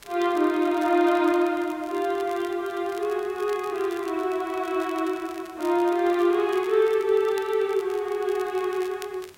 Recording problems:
hiss; slope -3 dB per octave, SNR 28 dB
crackle; vinyl, SNR 23 dB

